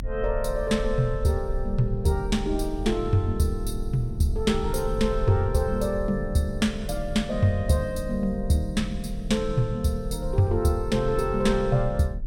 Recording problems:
rumble; below 50 Hz, strongest tone 40 Hz, SNR 9 dB

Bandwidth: 16.5 kHz